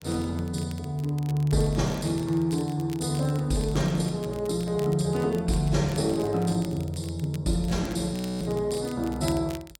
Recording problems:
codec artefacts; AAC, log-spectral distance 2 dB, nothing above 11.3 kHz
crackle; vinyl, SNR 21 dB
audio freezing; at 8 s

